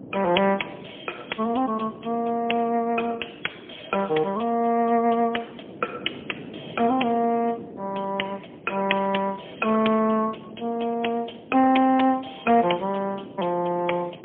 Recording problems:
telephone audio; 280 Hz to 3.3 kHz, AMR-NB, then MP3
wind noise; below 460 Hz, SNR 18 dB

